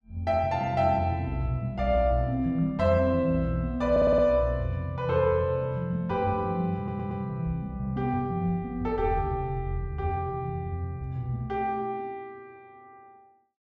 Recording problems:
stutter; at 4 s and at 7 s

